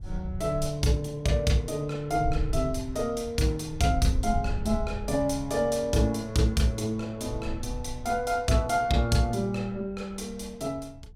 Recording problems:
wind on the microphone; below 80 Hz, SNR 9 dB

